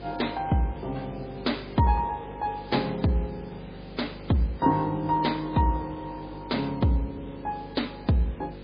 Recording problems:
codec artefacts; MP3, log-spectral distance 9 dB, nothing above 4.4 kHz
electrical hum; 50 Hz, harmonics up to 550 Hz, SNR 16 dB
background hiss; SNR 23 dB

